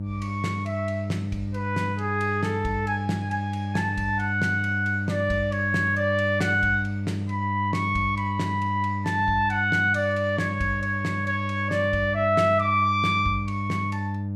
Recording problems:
hum; 50 Hz, harmonics up to 600 Hz, SNR 5 dB

